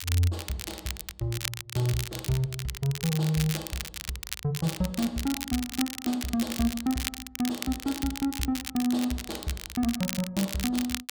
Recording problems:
crackle; vinyl, SNR 6 dB

